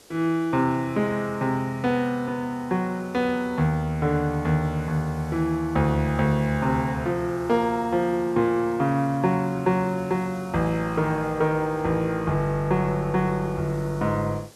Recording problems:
hiss; SNR 25 dB

